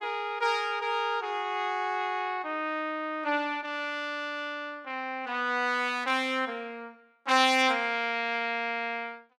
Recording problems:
none

